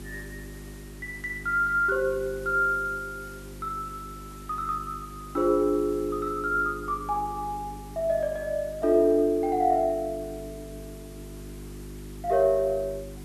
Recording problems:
hum; 50 Hz, harmonics up to 400 Hz, SNR 17 dB
background hiss; slope -2 dB per octave, SNR 23 dB

